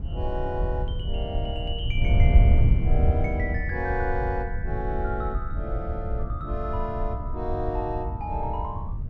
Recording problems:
wind on the microphone; below 92 Hz, SNR -4 dB

